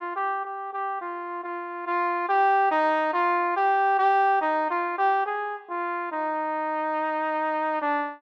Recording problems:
none

